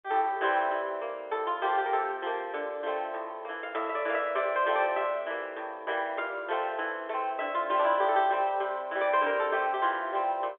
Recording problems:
phone line; 340 Hz to 3.6 kHz, G.711

